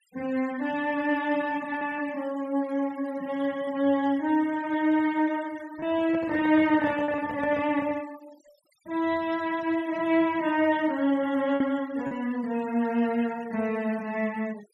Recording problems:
denoising artefacts; signal-to-artefact ratio 22 dB
lost packets; 1.5% of the sound replaced, filled with repeated pitch periods
handling noise; from 6 to 8 s; peak -9 dB vs average level

